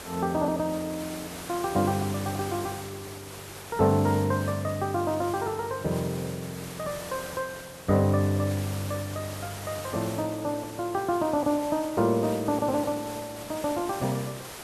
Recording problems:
background hiss; slope -3 dB per octave, SNR 12 dB

